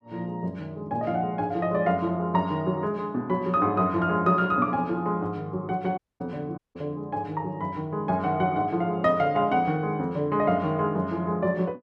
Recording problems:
dropout; at 6 s and at 6.5 s

